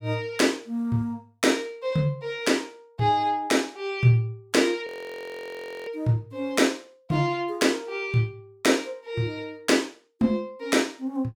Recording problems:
frozen audio; at 5 s for 1 s

